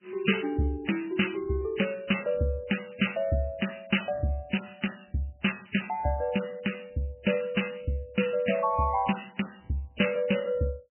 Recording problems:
codec artefacts; MP3, log-spectral distance 6 dB, nothing above 3 kHz

